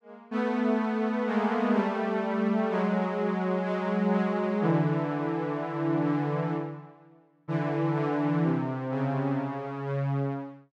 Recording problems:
none

